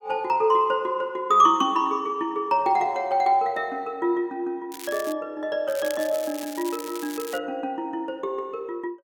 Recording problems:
crackling; at 4.5 s and from 5.5 to 7.5 s; loose cable, SNR 15 dB

